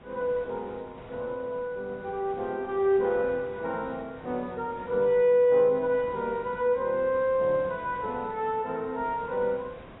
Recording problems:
lossy codec; AAC, log-spectral distance 2 dB, nothing above 10.7 kHz
background hiss; SNR 20 dB

